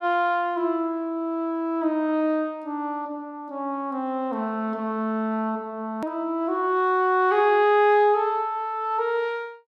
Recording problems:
edit click; at 6 s

